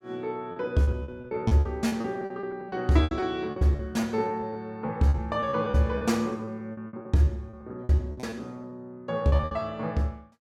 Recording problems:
packet loss; 16% of the sound replaced, filled with repeated pitch periods

